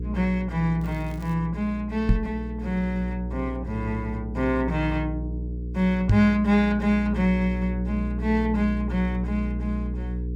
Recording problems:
hum; 60 Hz, harmonics up to 480 Hz, SNR 6 dB
crackle; at 1 s; loose cable, SNR 29 dB
microphone thump; at 2 s and at 6 s; peak +8 dB vs average level

